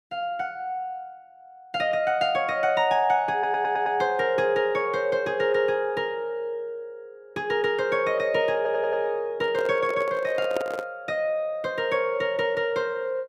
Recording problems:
stutter; at 3.5 s and at 8.5 s
microphone handling noise; from 9.5 to 11 s; peak -1 dB vs average level

